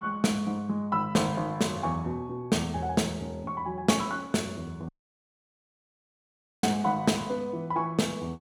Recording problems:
audio cutting out; at 5 s for 1.5 s

